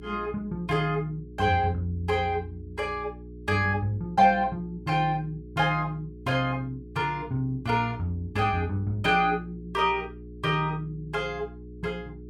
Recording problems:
electrical hum; 60 Hz, harmonics up to 420 Hz, SNR 16 dB

